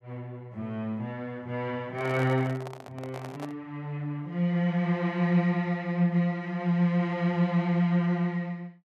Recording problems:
microphone handling noise; from 2 to 3.5 s; peak -8 dB vs average level

